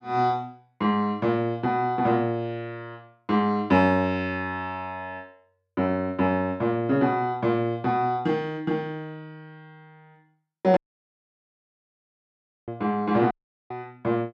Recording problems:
audio cutting out; at 11 s for 2 s and at 13 s

